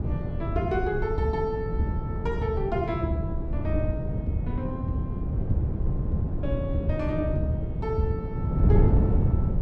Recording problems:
wind on the microphone; below 160 Hz, SNR -2 dB

